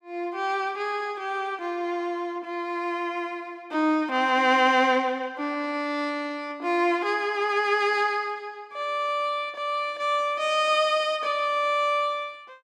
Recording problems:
none

